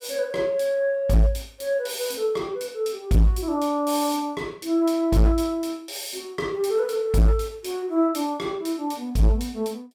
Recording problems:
distortion; hard clipping, signal-to-distortion ratio 8 dB

